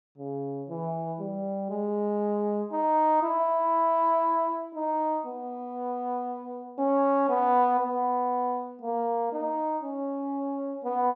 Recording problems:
none

